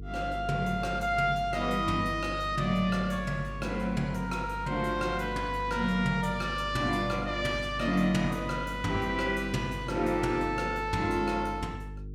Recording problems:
mains hum; 50 Hz, harmonics up to 450 Hz, SNR 11 dB

